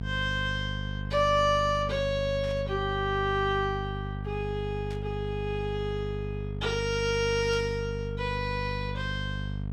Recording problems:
hum; 50 Hz, harmonics up to 500 Hz, SNR 5 dB
static burst; at 2.5 s, at 5 s and at 7.5 s; peak -13 dB vs average level

